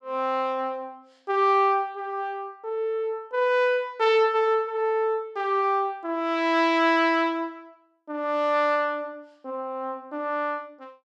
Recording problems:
none

